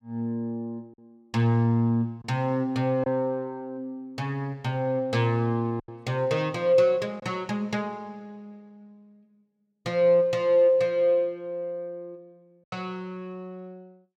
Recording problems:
packet loss; 1.4% of the sound replaced, filled with silence

